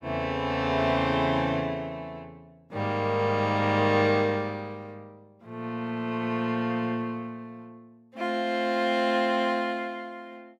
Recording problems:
none

